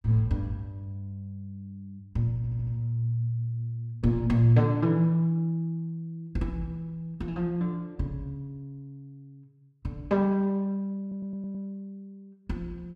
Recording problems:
stutter; at 2.5 s and at 11 s

